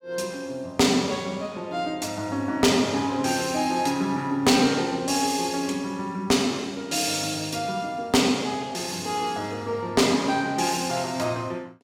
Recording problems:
distorted audio; hard clipping, signal-to-distortion ratio 11 dB

